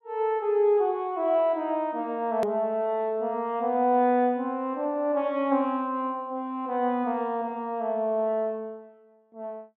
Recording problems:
hard cut with a click; at 2.5 s

